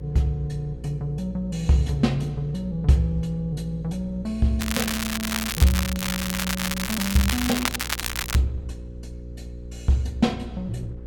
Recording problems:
electrical hum; 60 Hz, harmonics up to 540 Hz, SNR 12 dB
wind on the microphone; below 130 Hz, SNR 22 dB
crackling; from 4.5 to 8.5 s; loose cable, SNR 2 dB

